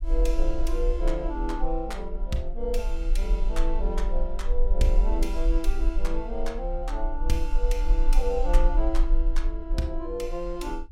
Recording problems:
rumble; below 40 Hz, strongest tone 22 Hz, SNR -3 dB

